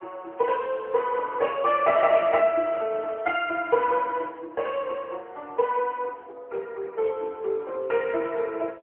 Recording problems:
phone line; 340 Hz to 3.1 kHz, AMR-NB

